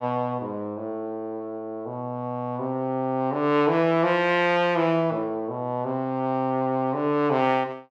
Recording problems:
none

